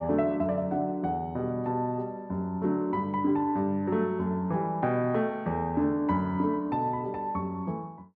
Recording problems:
none

